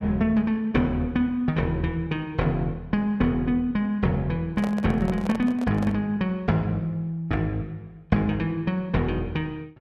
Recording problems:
handling noise; from 4.5 to 6 s; peak -4 dB vs average level

